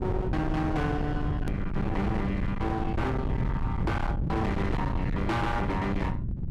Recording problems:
distortion; hard clipping, signal-to-distortion ratio 7 dB
rumble; below 190 Hz, SNR 1 dB
edit click; at 1.5 s

